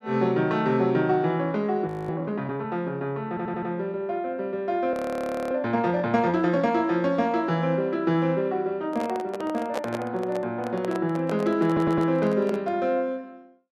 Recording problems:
frozen audio; at 2 s and at 5 s for 0.5 s
stutter; at 3.5 s and at 12 s
handling noise; from 9 to 13 s; peak -1 dB vs average level

